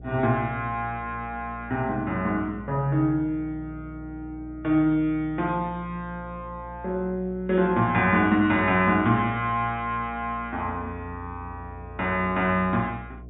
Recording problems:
low-pass filter; nothing above 4 kHz
mains hum; 60 Hz, harmonics up to 720 Hz, SNR 18 dB

